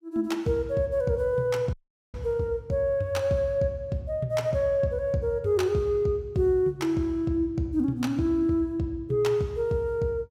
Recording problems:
dropout; at 1.5 s

